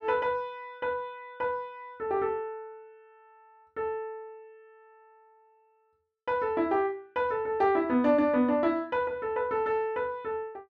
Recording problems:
none

